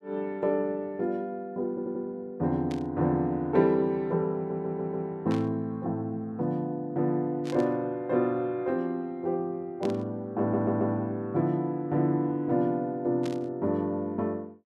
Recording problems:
stutter; at 1.5 s, at 4.5 s and at 10 s
static burst; 5 times, first at 2.5 s; peak -10 dB vs average level

